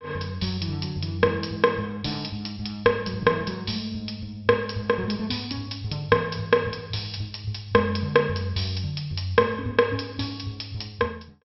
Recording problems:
low-pass filter; nothing above 5.6 kHz

